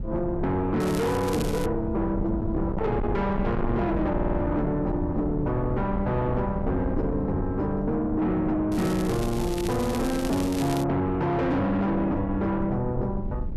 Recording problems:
distortion; soft clipping, signal-to-distortion ratio 7 dB
rumble; below 180 Hz, SNR 8 dB
wind on the microphone; below 240 Hz, SNR 12 dB
crackling; at 1 s and from 8.5 to 11 s; loose cable, SNR 14 dB
audio stuttering; at 4 s

